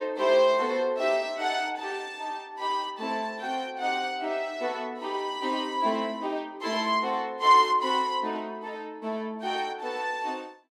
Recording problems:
none

